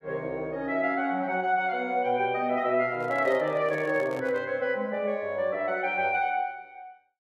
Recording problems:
microphone handling noise; from 3 to 4.5 s; peak -9 dB vs average level

